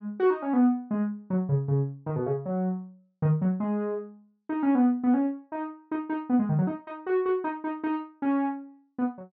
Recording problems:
low-pass filter; nothing above 6 kHz

